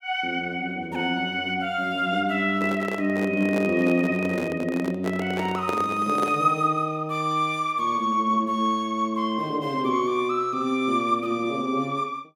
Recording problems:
microphone handling noise; from 2.5 to 6.5 s; peak 0 dB vs average level

